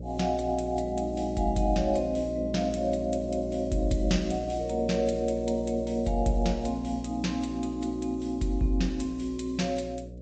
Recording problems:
lossy codec; G.722, then MP3, log-spectral distance 3 dB, nothing above 8 kHz
hum; 60 Hz, harmonics up to 600 Hz, SNR 11 dB

